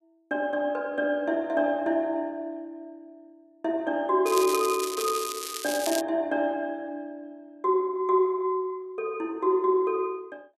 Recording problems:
crackle; from 4.5 to 6 s; loose cable, SNR 7 dB

